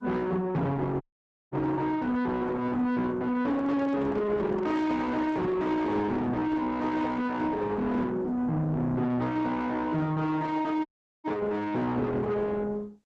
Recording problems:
lossy compression; Opus, log-spectral distance 2 dB
distortion; soft clipping, signal-to-distortion ratio 5 dB
audio cutting out; at 1 s for 0.5 s and at 11 s
microphone handling noise; from 3.5 to 5.5 s; peak +1 dB vs average level

